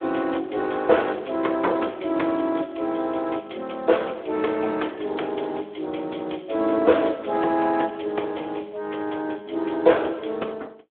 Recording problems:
phone line; 260 Hz to 3.4 kHz, Speex

